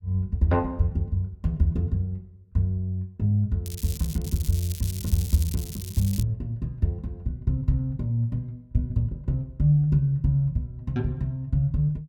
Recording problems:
crackling; from 3.5 to 6.5 s; loose cable, SNR 12 dB

